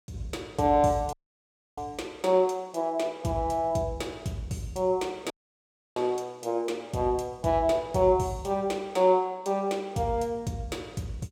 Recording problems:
dropout; at 1 s for 0.5 s and at 5.5 s for 0.5 s

